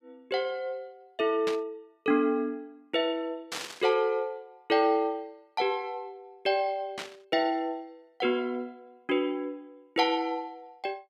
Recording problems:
burst of static; at 1.5 s, at 3.5 s and at 7 s; peak -1 dB vs average level

